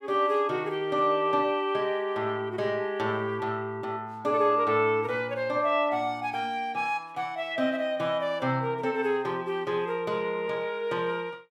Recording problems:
none

